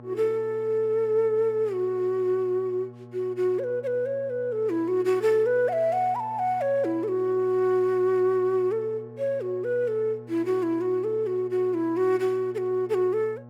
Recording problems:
hum; 60 Hz, harmonics up to 1.3 kHz, SNR 20 dB

